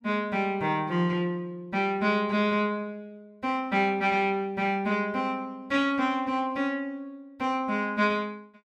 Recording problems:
none

